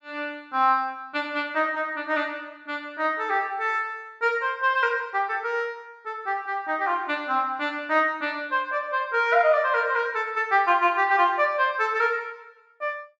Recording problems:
none

